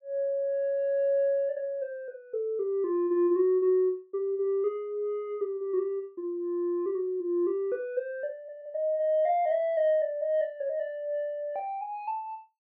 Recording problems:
none

